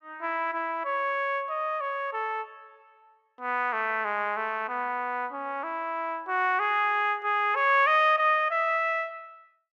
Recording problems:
none

